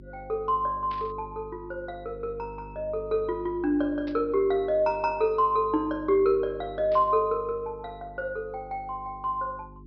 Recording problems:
treble missing; nothing above 5.5 kHz
electrical hum; 50 Hz, harmonics up to 400 Hz, SNR 19 dB
burst of static; at 1 s, at 4 s and at 7 s; peak -14 dB vs average level

